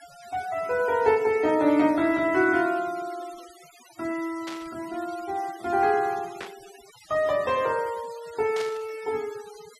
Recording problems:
noise reduction artefacts; signal-to-artefact ratio 21 dB
static burst; at 4.5 s, at 6.5 s and at 8.5 s; peak -7 dB vs average level

